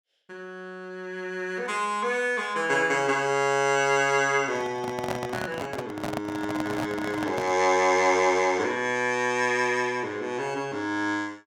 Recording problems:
handling noise; from 4.5 to 7.5 s; peak -1 dB vs average level

